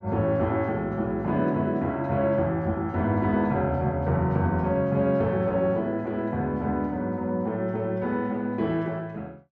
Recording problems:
none

